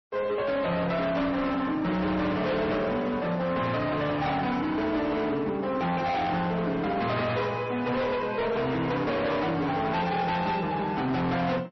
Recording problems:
lossy codec; MP3, log-spectral distance 2 dB, nothing above 5.7 kHz
distortion; hard clipping, signal-to-distortion ratio 7 dB

